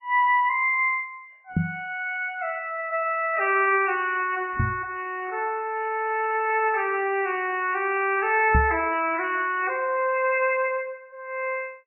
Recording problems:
codec artefacts; MP3, log-spectral distance 3 dB, nothing above 2.6 kHz
knock on the microphone; at 1.5 s, at 4.5 s and at 8.5 s; peak +4 dB vs average level
crackle; from 4.5 to 8.5 s; loose cable, SNR 28 dB

